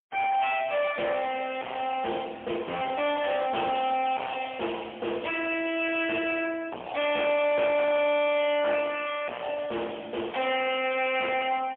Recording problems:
phone line; 300 Hz to 3.2 kHz, AMR-NB, then MP3
distorted audio; hard clipping, signal-to-distortion ratio 8 dB
crackling; from 7.5 to 10 s; loose cable, SNR 26 dB

